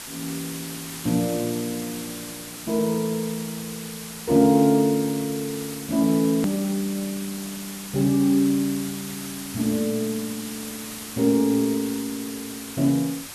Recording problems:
background hiss; slope 0 dB per octave, SNR 11 dB
click at an edit; at 6.5 s

